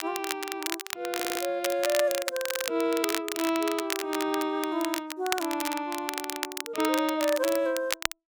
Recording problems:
crackling; vinyl, SNR 4 dB
stutter; at 1 s and at 2.5 s

